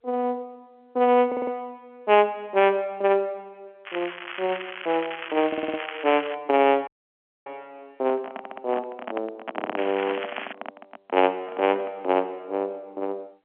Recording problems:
phone line; 220 Hz to 3.3 kHz, G.711
stutter; 4 times, first at 1.5 s
crackling; from 4 to 6.5 s and at 10 s; loose cable, SNR 11 dB
audio cutting out; at 7 s for 0.5 s
handling noise; from 8 to 12 s; peak -2 dB vs average level

